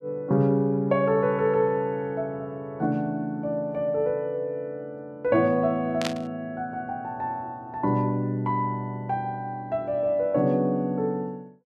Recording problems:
static burst; at 6 s; peak +1 dB vs average level

